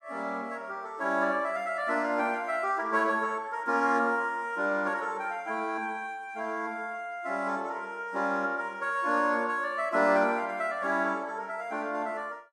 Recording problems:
none

